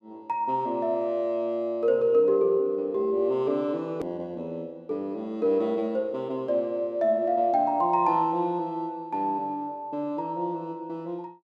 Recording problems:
hard cut with a click; at 4 s

